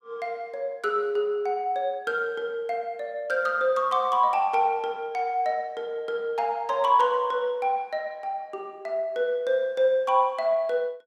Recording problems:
none

